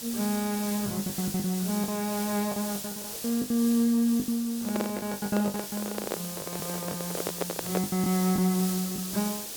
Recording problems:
hiss; SNR 6 dB
packet loss; 14% of the sound replaced, filled with the last packet
handling noise; from 4.5 to 8 s; peak +2 dB vs average level

